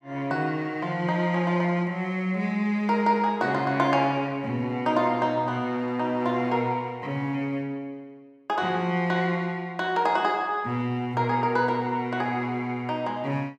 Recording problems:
none

